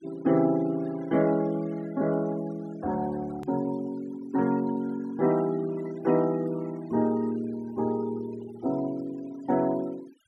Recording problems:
denoising artefacts; signal-to-artefact ratio 21 dB
edit click; at 3.5 s

